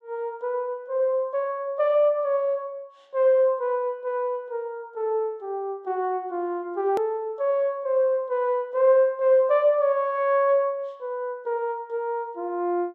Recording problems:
click at an edit; at 7 s

